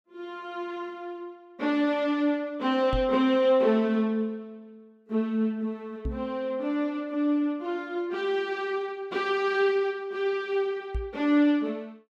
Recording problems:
knock on the microphone; at 3 s, at 6 s and at 11 s; peak -1 dB vs average level

